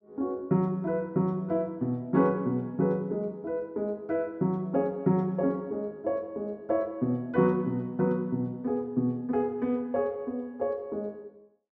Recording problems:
none

